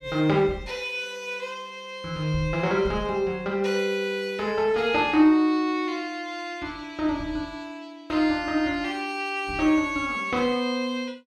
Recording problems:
none

